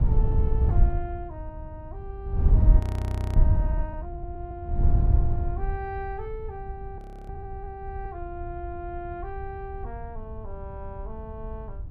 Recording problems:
wind on the microphone; below 86 Hz, SNR -13 dB
audio freezing; at 3 s for 0.5 s and at 7 s

